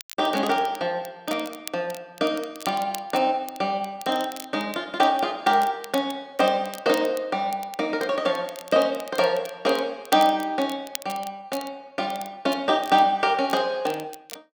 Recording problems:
crackle; vinyl, SNR 17 dB

